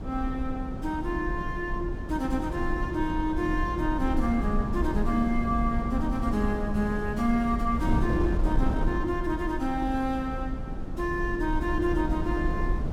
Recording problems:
wind noise; below 140 Hz, SNR 3 dB

